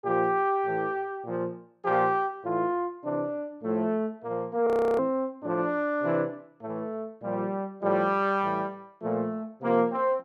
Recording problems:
frozen audio; at 4.5 s

